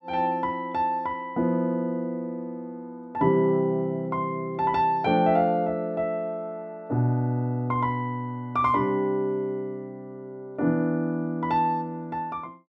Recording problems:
none

